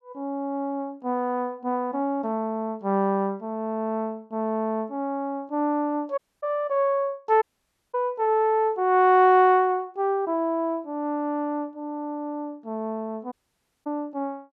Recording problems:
audio cutting out; at 6 s, at 7.5 s for 0.5 s and at 13 s for 0.5 s

